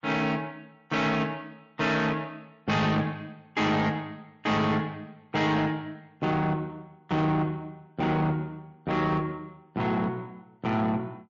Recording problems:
lossy compression; MP3, then MP3, log-spectral distance 2 dB, nothing above 6.9 kHz
distorted audio; soft clipping, signal-to-distortion ratio 11 dB

